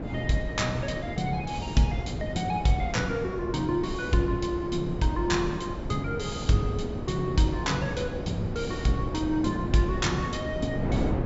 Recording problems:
treble cut off; nothing above 7.5 kHz
wind on the microphone; below 380 Hz, SNR 6 dB

